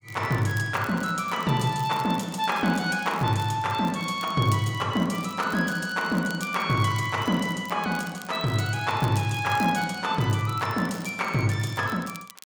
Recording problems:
crackling; vinyl, SNR 20 dB

